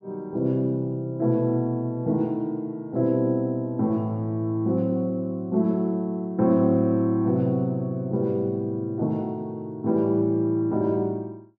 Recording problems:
none

